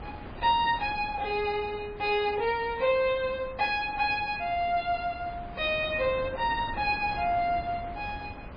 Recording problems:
codec artefacts; MP3, log-spectral distance 2 dB, nothing above 4.1 kHz
wind on the microphone; below 730 Hz, SNR 15 dB

